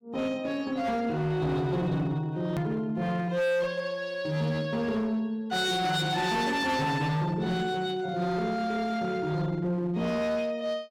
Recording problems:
distorted audio; hard clipping, signal-to-distortion ratio 10 dB
edit click; at 2.5 s

